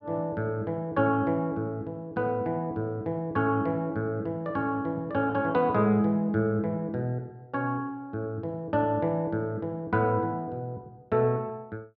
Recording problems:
none

